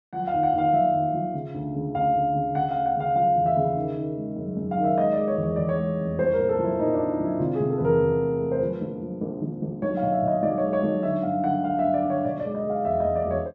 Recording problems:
none

